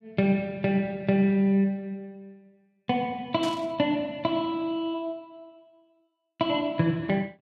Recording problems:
burst of static; at 3.5 s; peak -8 dB vs average level

